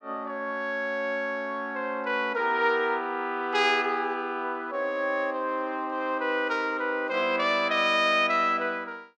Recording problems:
none

